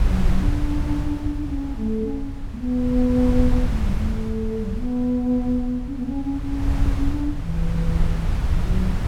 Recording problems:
wind noise; below 90 Hz, SNR 2 dB

